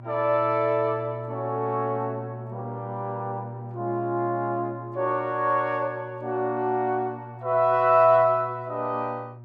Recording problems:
electrical hum; 60 Hz, harmonics up to 960 Hz, SNR 15 dB

